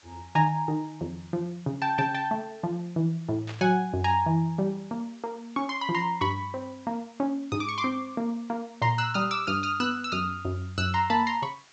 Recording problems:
treble missing; nothing above 8 kHz
hiss; slope 0 dB per octave, SNR 27 dB
burst of static; at 3.5 s; peak -8 dB vs average level

